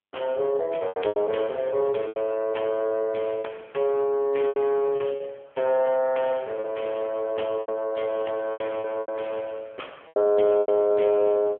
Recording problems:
phone line; 320 Hz to 3.3 kHz, AMR-NB
lost packets; 8% of the sound replaced, filled with repeated pitch periods

